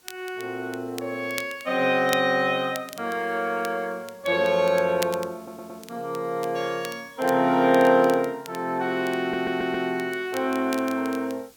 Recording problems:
hiss; SNR 29 dB
crackling; vinyl, SNR 18 dB
audio stuttering; at 5.5 s and at 9 s

